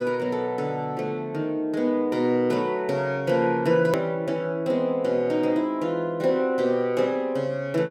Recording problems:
edit click; at 4 s

